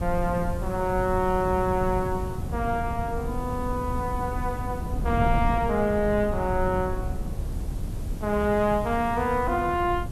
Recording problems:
background hiss; slope +1 dB per octave, SNR 24 dB
wind noise; below 140 Hz, SNR 6 dB

